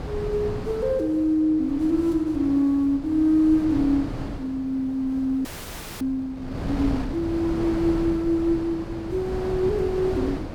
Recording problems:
wind noise; below 410 Hz, SNR 10 dB
frozen audio; at 5.5 s for 0.5 s

